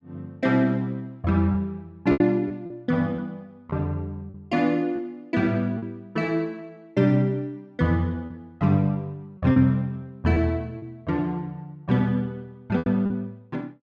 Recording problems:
lost packets; 4% of the sound replaced, filled with repeated pitch periods

